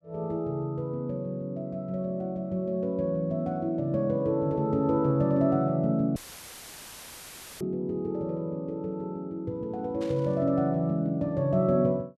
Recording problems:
dropout; at 6 s for 1.5 s; filled with static
static burst; at 10 s; peak -13 dB vs average level

